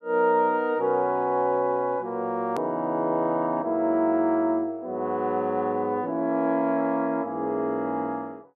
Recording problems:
click at an edit; at 2.5 s

